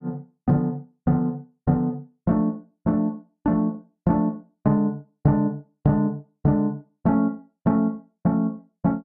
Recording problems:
none

